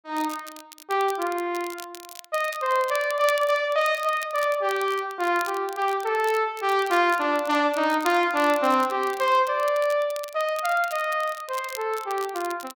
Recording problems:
crackle; vinyl, SNR 18 dB

